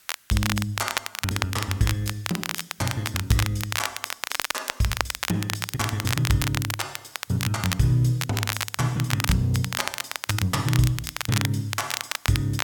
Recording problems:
background hiss; SNR 27 dB
crackling; vinyl, SNR 3 dB

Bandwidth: 17 kHz